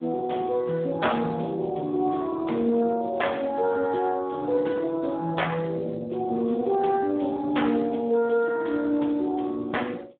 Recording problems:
telephone audio; 190 Hz to 3.6 kHz, Speex

